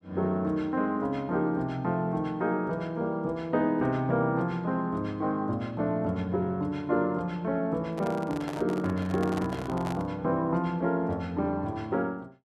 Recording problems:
microphone handling noise; from 8 to 10 s; peak -3 dB vs average level

